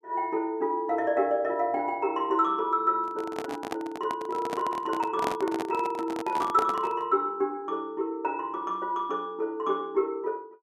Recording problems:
microphone handling noise; from 3 to 7 s; peak +2 dB vs average level

